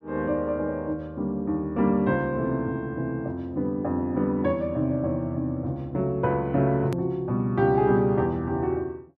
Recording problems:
hard cut with a click; at 7 s

